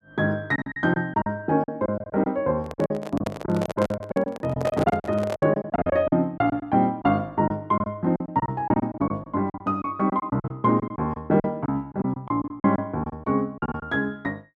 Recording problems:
packet loss; 15% of the sound replaced, filled with silence
microphone handling noise; from 2.5 to 5.5 s; peak -1 dB vs average level

